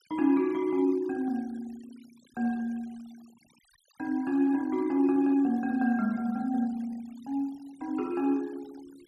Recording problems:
denoising artefacts; signal-to-artefact ratio 27 dB

